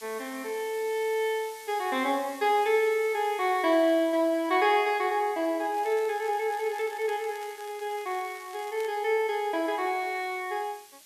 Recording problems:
hiss; SNR 21 dB
crackle; from 5.5 to 9 s; loose cable, SNR 23 dB

